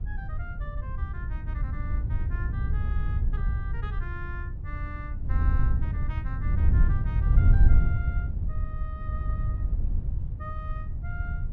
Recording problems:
wind noise; below 86 Hz, SNR -14 dB

